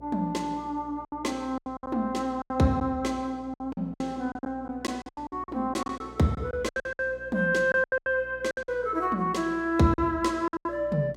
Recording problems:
hum; 60 Hz, harmonics up to 720 Hz, SNR 23 dB
lost packets; 14% of the sound replaced, filled with silence

